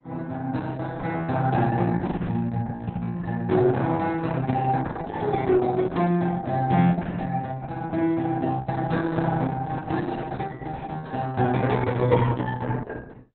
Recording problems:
codec artefacts; Opus, log-spectral distance 4 dB, nothing above 4 kHz

